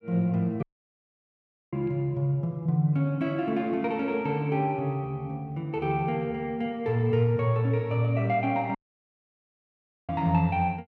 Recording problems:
dropout; at 0.5 s for 1 s and at 9 s for 1.5 s

